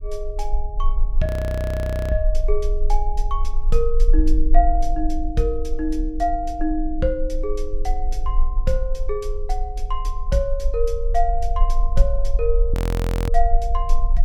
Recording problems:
low-frequency rumble; below 40 Hz, strongest tone 18 Hz, SNR -1 dB
frozen audio; at 1.5 s for 1 s and at 13 s for 0.5 s

